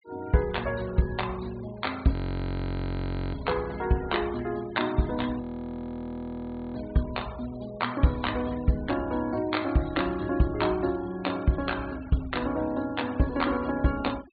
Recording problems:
treble cut off; nothing above 4.4 kHz
denoising artefacts; signal-to-artefact ratio 19 dB
audio freezing; at 2 s for 1 s and at 5.5 s for 1.5 s

